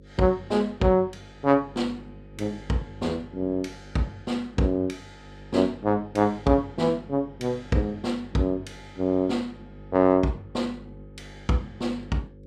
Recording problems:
hum; 50 Hz, harmonics up to 550 Hz, SNR 20 dB

